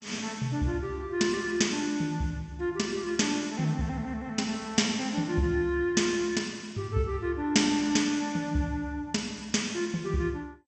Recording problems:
lossy compression; MP2, log-spectral distance 2 dB, nothing above 8 kHz

